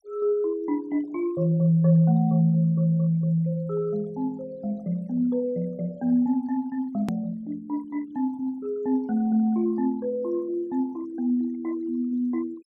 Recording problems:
denoising artefacts; signal-to-artefact ratio 27 dB
edit click; at 7 s

